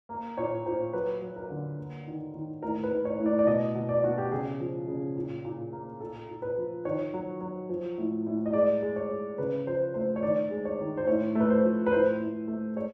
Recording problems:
none

